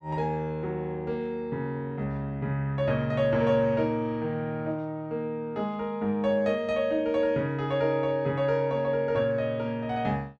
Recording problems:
none

